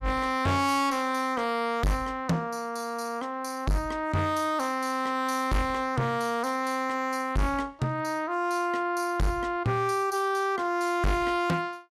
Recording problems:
distortion; hard clipping, signal-to-distortion ratio 7 dB

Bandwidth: 15 kHz